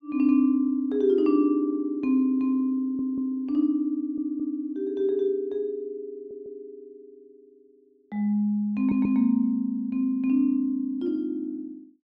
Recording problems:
audio stuttering; 4 times, first at 3 s

